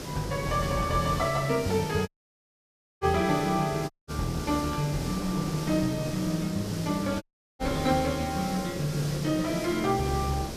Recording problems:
hiss; SNR 9 dB
wind on the microphone; below 700 Hz, SNR 14 dB
dropout; at 2 s for 1 s, at 4 s and at 7 s

